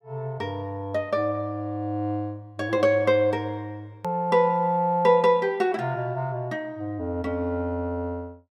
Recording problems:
edit click; at 4 s

